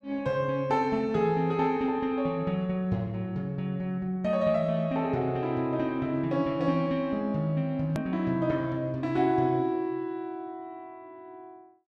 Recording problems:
hard cut with a click; at 8 s

